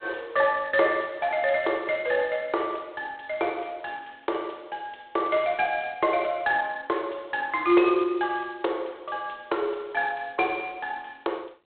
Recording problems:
phone line; 300 Hz to 3.8 kHz, G.726

